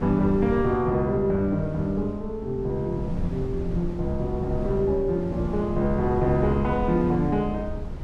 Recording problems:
wind on the microphone; below 160 Hz, SNR 9 dB

